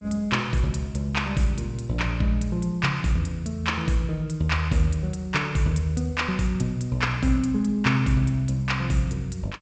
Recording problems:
codec artefacts; G.722, log-spectral distance 2 dB, nothing above 8 kHz

